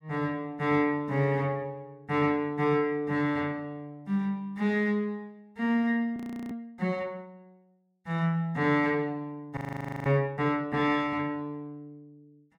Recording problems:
frozen audio; at 6 s and at 9.5 s

